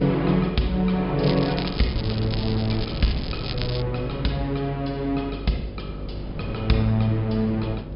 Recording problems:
low-pass filter; nothing above 5.5 kHz
electrical hum; 50 Hz, harmonics up to 600 Hz, SNR 11 dB
wind noise; below 270 Hz, SNR 12 dB
crackle; from 1 to 4 s; loose cable, SNR 10 dB

